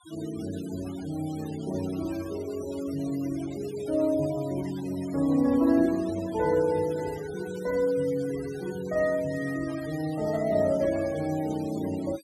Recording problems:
denoising artefacts; signal-to-artefact ratio 18 dB

